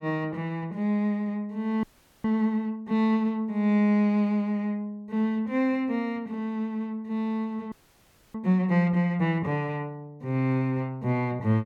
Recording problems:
audio freezing; at 2 s and at 7.5 s for 0.5 s

